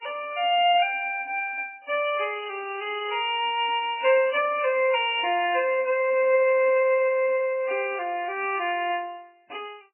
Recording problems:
lossy compression; MP3, log-spectral distance 4 dB, nothing above 2.4 kHz

